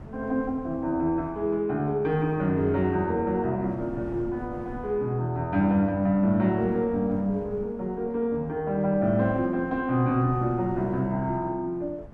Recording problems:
wind noise; below 300 Hz, SNR 18 dB

